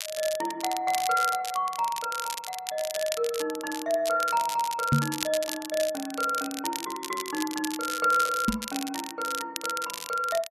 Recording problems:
crackling; vinyl, SNR 7 dB
microphone bump; at 5 s and at 8.5 s; peak +9 dB vs average level

